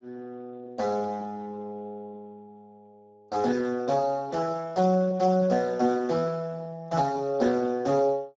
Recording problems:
lossy codec; Speex, log-spectral distance 3 dB

